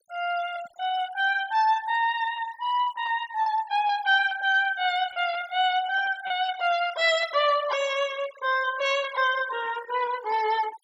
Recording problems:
denoising artefacts; signal-to-artefact ratio 18 dB
packet loss; 3% of the sound replaced, filled with repeated pitch periods

